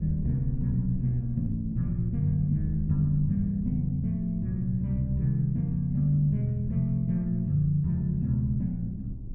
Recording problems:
low-frequency rumble; below 96 Hz, SNR 13 dB

